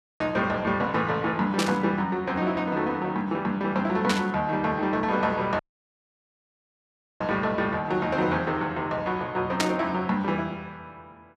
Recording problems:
burst of static; at 1.5 s, at 4 s and at 9.5 s; peak +4 dB vs average level
dropout; at 5.5 s for 1.5 s

